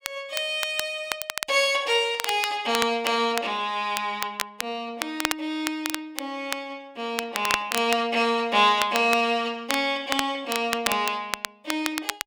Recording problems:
crackling; vinyl, SNR 7 dB

